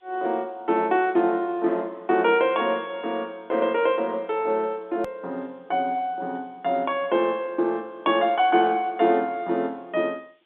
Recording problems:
phone line; 240 Hz to 3.7 kHz, G.711
hiss; SNR 42 dB
click at an edit; at 5 s

